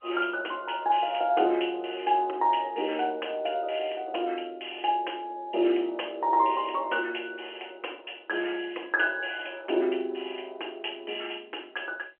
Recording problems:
phone line; 280 Hz to 3.2 kHz, G.711

